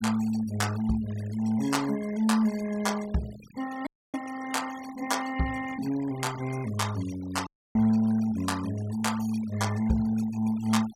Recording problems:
noise reduction artefacts; signal-to-artefact ratio 17 dB
audio cutting out; at 4 s and at 7.5 s

